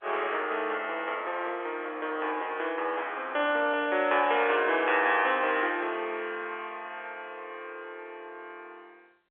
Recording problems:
telephone audio; 320 Hz to 3.4 kHz, G.711

